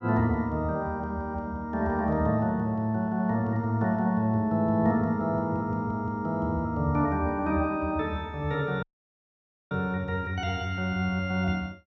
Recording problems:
dropout; at 9 s for 1 s

